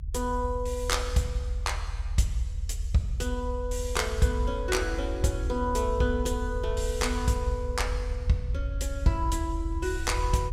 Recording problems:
low-frequency rumble; below 76 Hz, strongest tone 40 Hz, SNR 4 dB

